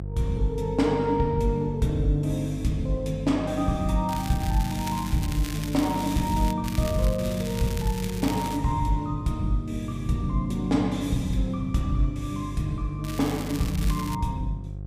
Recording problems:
hum; 50 Hz, harmonics up to 550 Hz, SNR 9 dB
crackle; from 4 to 6.5 s, from 6.5 to 8.5 s and from 13 to 14 s; loose cable, SNR 12 dB

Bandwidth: 15 kHz